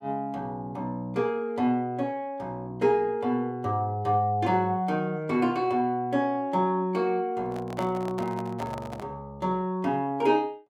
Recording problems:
handling noise; from 7.5 to 9 s; peak -4 dB vs average level

